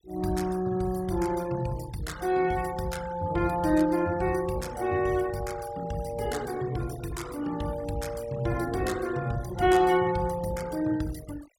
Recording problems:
denoising artefacts; signal-to-artefact ratio 19 dB

